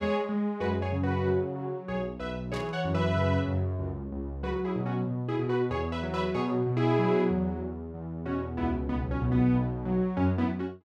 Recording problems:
static burst; at 2.5 s; peak -10 dB vs average level

